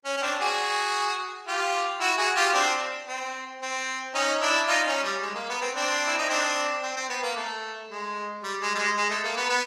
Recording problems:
codec artefacts; Opus, log-spectral distance 5 dB, nothing above 17.7 kHz

